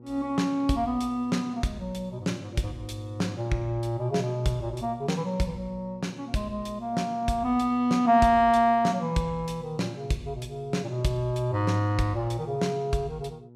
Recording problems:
hum; 60 Hz, harmonics up to 960 Hz, SNR 20 dB

